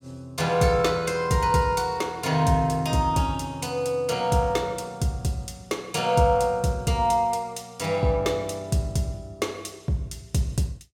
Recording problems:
none

